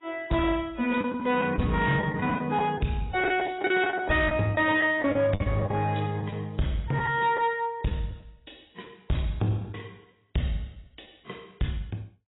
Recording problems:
lossy compression; AAC, log-spectral distance 4 dB, nothing above 3.8 kHz
distortion; soft clipping, signal-to-distortion ratio 12 dB
packet loss; 8% of the sound replaced, filled with the last packet

